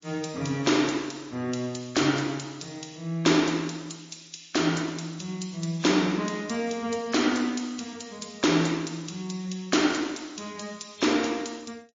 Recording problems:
lossy codec; MP3, log-spectral distance 8 dB, nothing above 7.1 kHz

